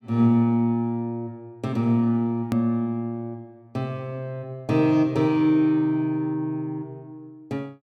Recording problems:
click at an edit; at 2.5 s

